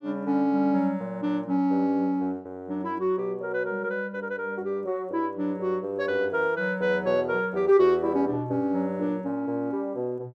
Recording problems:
none

